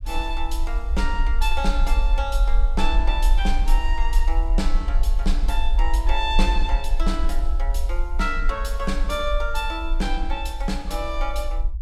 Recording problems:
rumble; below 44 Hz, SNR -3 dB

